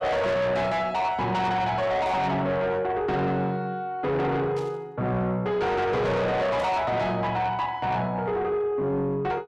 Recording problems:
distortion; soft clipping, signal-to-distortion ratio 6 dB
static burst; at 2 s, at 4.5 s and at 6.5 s; peak -14 dB vs average level

